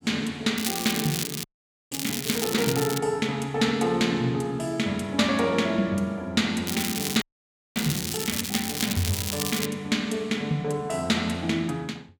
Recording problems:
crackle; from 0.5 to 3 s and from 6.5 to 9.5 s; loose cable, SNR 4 dB
audio freezing; at 1.5 s and at 7 s for 0.5 s

